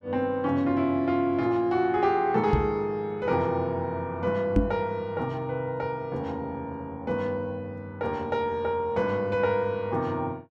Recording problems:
knock on the microphone; at 2.5 s and at 4.5 s; peak +8 dB vs average level

